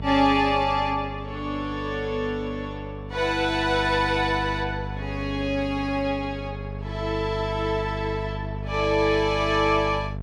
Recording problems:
hum; 50 Hz, harmonics up to 700 Hz, SNR 9 dB

